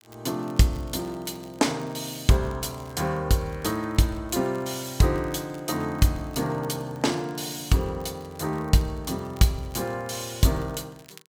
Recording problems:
crackle; vinyl, SNR 27 dB

